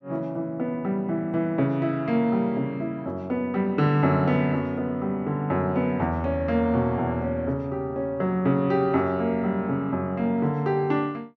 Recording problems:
none

